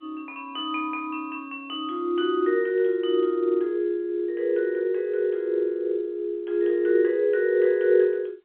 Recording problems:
phone line; 320 Hz to 3.3 kHz, G.711

